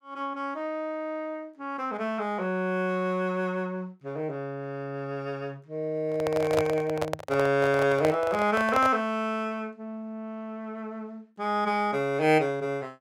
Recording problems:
microphone handling noise; from 6 to 9 s; peak +3 dB vs average level

